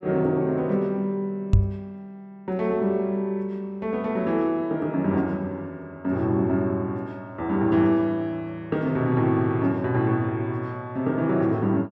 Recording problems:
microphone thump; at 1.5 s; peak +9 dB vs average level

